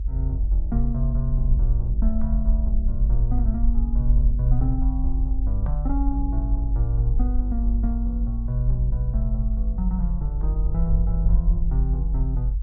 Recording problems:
rumble; below 50 Hz, strongest tone 48 Hz, SNR -4 dB

